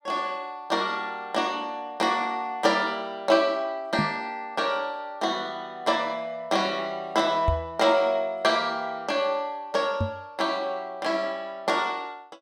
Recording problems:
microphone bump; at 4 s, at 7.5 s and at 10 s; peak +4 dB vs average level

